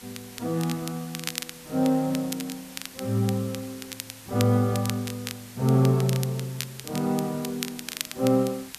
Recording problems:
background hiss; slope 0 dB per octave, SNR 18 dB
crackling; vinyl, SNR 11 dB

